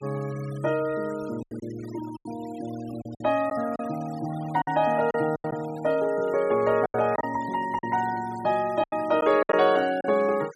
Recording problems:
denoising artefacts; signal-to-artefact ratio 20 dB
lost packets; 8% of the sound replaced, filled with silence

